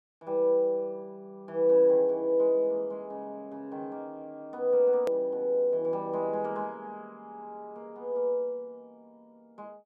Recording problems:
click at an edit; at 5 s

